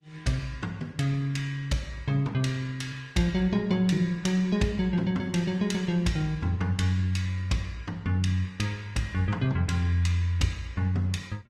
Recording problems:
codec artefacts; Opus, log-spectral distance 2 dB, nothing above 16.1 kHz

